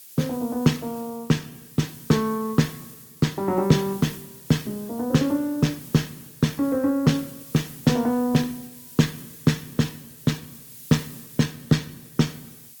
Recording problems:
lossy compression; Opus, log-spectral distance 3 dB, nothing above 18.9 kHz
background hiss; SNR 17 dB

